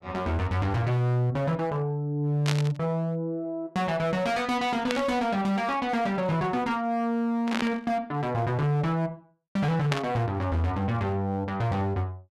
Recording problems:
distorted audio; hard clipping, signal-to-distortion ratio 12 dB
static burst; 4 times, first at 2.5 s; peak +2 dB vs average level

